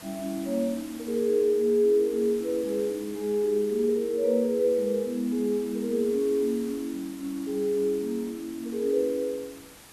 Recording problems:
background hiss; slope -2 dB per octave, SNR 19 dB

